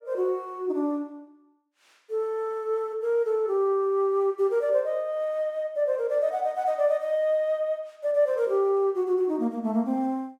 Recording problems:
none

